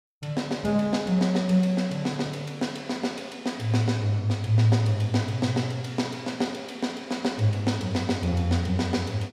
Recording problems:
none

